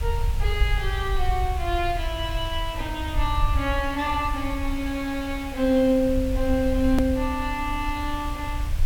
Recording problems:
hiss; slope -2 dB per octave, SNR 15 dB
low-frequency rumble; below 70 Hz, SNR 5 dB
edit click; at 7 s

